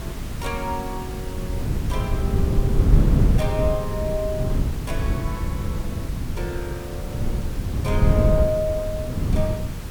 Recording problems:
hiss; slope -3 dB per octave, SNR 11 dB
wind on the microphone; below 150 Hz, SNR -5 dB

